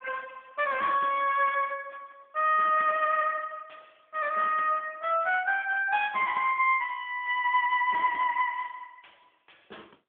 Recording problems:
phone line; 410 Hz to 3.3 kHz, AMR-NB

